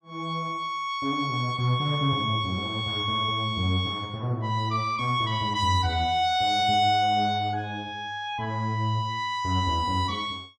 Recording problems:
none

